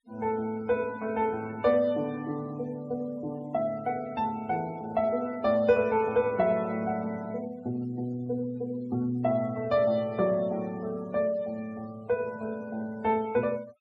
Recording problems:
noise reduction artefacts; signal-to-artefact ratio 23 dB

